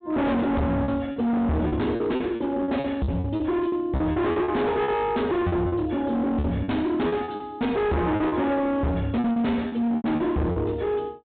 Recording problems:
treble missing; nothing above 4 kHz
distorted audio; hard clipping, signal-to-distortion ratio 7 dB
lost packets; 12% of the sound replaced, filled with repeated pitch periods

